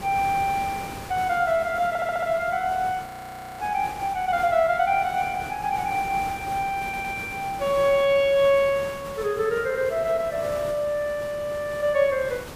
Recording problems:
background hiss; slope -5 dB per octave, SNR 14 dB
audio stuttering; at 2 s and at 7 s
frozen audio; at 3 s for 0.5 s

